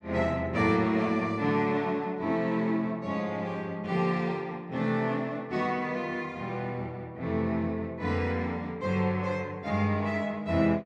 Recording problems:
none

